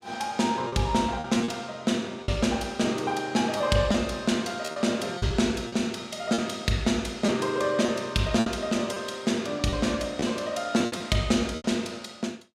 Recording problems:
packet loss; 6% of the sound replaced, filled with repeated pitch periods

